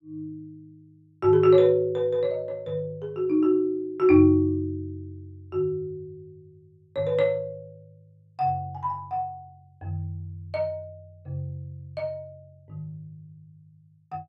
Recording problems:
none

